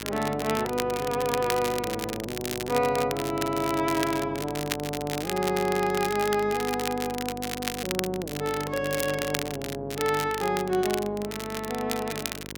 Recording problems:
hum; 50 Hz, harmonics up to 1.1 kHz, SNR 12 dB
crackling; vinyl, SNR 7 dB

